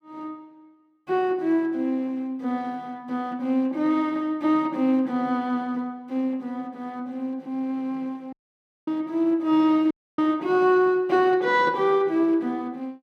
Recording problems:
audio cutting out; at 8.5 s for 0.5 s and at 10 s

